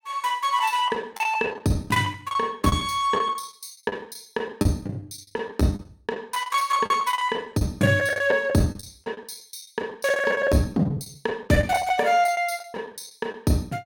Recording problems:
lost packets; 17% of the sound replaced, filled with the last packet

